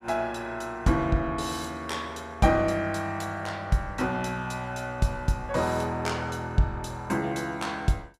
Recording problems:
none

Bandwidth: 14.5 kHz